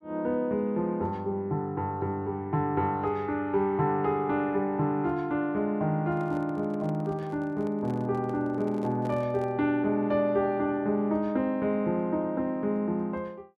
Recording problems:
handling noise; from 6 to 9.5 s; peak -10 dB vs average level

